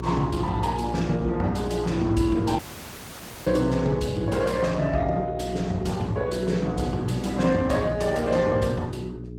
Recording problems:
codec artefacts; Opus, log-spectral distance 4 dB, nothing above 18.3 kHz
hum; 60 Hz, harmonics up to 420 Hz, SNR 10 dB
audio cutting out; at 2.5 s for 1 s

